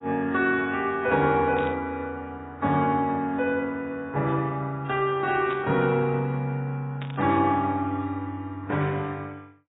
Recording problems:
codec artefacts; AAC, log-spectral distance 2 dB, nothing above 3.4 kHz
static burst; at 1.5 s, at 5.5 s and at 7 s; peak -9 dB vs average level

